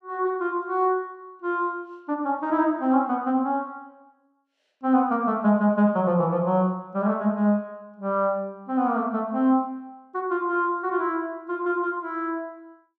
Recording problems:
none

